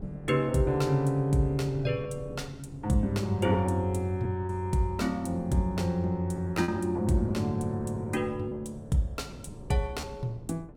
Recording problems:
wind noise; below 270 Hz, SNR 18 dB
lost packets; 3% of the sound replaced, filled with repeated pitch periods

